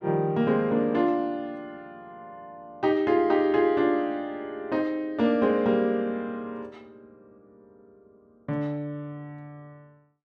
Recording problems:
none

